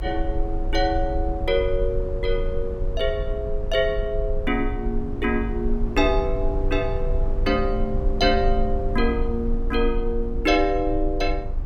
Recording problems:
rumble; below 52 Hz, strongest tone 26 Hz, SNR 4 dB

